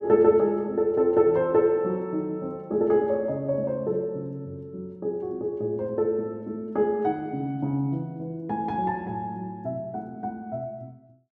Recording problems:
none

